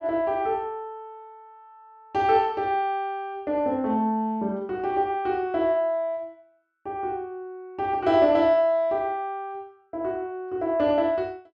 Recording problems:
none

